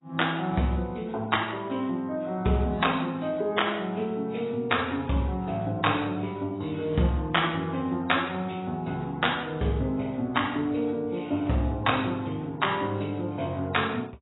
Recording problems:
codec artefacts; AAC, log-spectral distance 4 dB, nothing above 3.8 kHz

